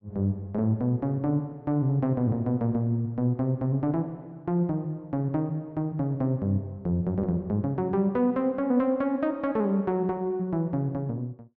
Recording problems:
none

